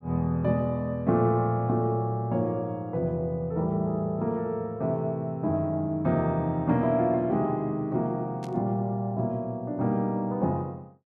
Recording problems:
burst of static; at 8.5 s; peak -15 dB vs average level

